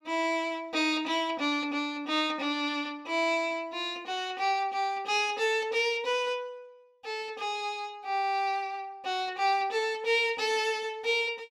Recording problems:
none

